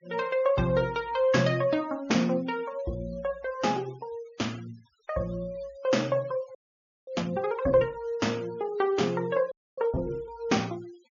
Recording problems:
treble missing; nothing above 6.9 kHz
denoising artefacts; signal-to-artefact ratio 23 dB
audio freezing; at 6.5 s for 0.5 s and at 9.5 s

